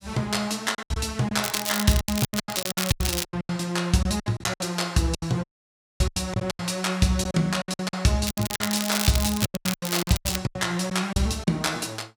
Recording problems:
lost packets; 17% of the sound replaced, filled with silence
crackling; from 1.5 to 3.5 s and from 8.5 to 10 s; loose cable, SNR 3 dB
audio cutting out; at 5.5 s for 0.5 s

